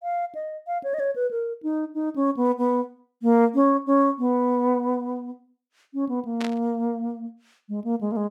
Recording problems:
burst of static; at 6.5 s; peak -6 dB vs average level

